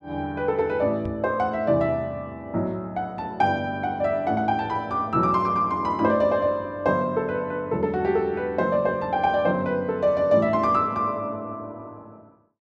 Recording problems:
microphone bump; at 1 s; peak -4 dB vs average level

